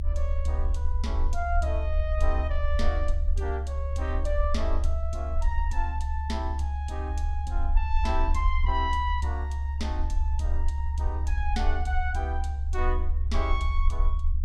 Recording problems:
rumble; below 70 Hz, SNR -5 dB

